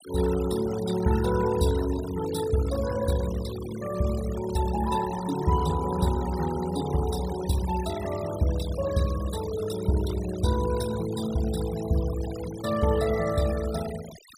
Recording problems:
denoising artefacts; signal-to-artefact ratio 14 dB

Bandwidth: 15.5 kHz